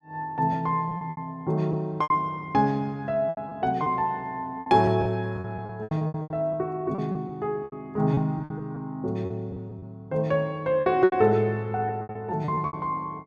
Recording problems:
lost packets; 12% of the sound replaced, filled with repeated pitch periods

